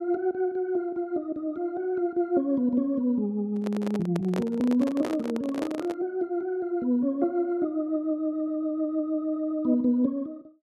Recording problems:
handling noise; from 3.5 to 6 s; peak -1 dB vs average level

